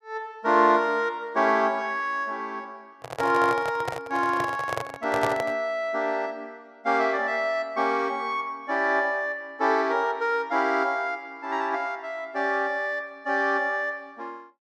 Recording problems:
microphone handling noise; from 3 to 5.5 s; peak +1 dB vs average level

